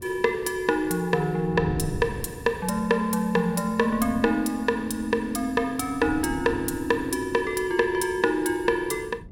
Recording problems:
wind noise; below 220 Hz, SNR 15 dB

